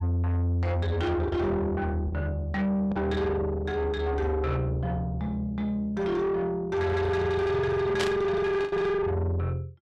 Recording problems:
distortion; soft clipping, signal-to-distortion ratio 6 dB
lost packets; 2% of the sound replaced, filled with the last packet
burst of static; at 8 s; peak +2 dB vs average level

